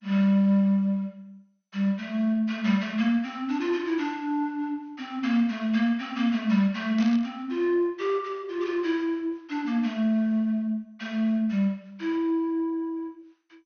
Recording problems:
lossy compression; MP2, log-spectral distance 2 dB, nothing above 6.3 kHz
burst of static; at 7 s; peak -11 dB vs average level

